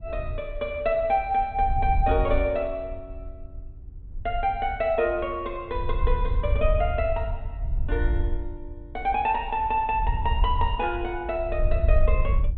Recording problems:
treble cut off; nothing above 4 kHz
wind noise; below 66 Hz, SNR 3 dB

